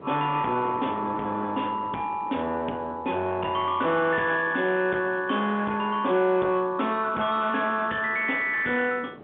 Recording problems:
phone line; 190 Hz to 3.6 kHz, G.711
distortion; soft clipping, signal-to-distortion ratio 11 dB
wind on the microphone; below 700 Hz, SNR 18 dB

